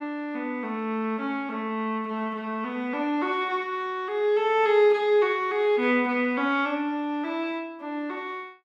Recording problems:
none

